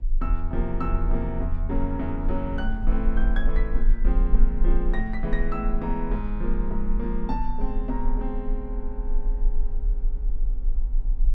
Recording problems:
rumble; below 36 Hz, strongest tone 22 Hz, SNR -2 dB
wind on the microphone; below 90 Hz, SNR 13 dB

